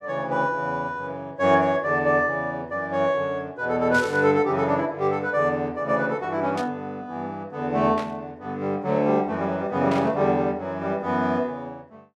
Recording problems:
burst of static; 4 times, first at 4 s; peak -7 dB vs average level

